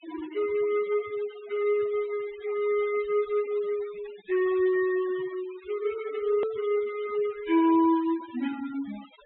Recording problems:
low-pass filter; nothing above 3.8 kHz
denoising artefacts; signal-to-artefact ratio 20 dB
edit click; at 6.5 s

